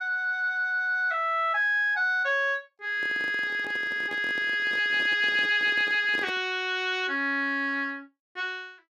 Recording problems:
handling noise; from 3 to 6.5 s; peak -8 dB vs average level

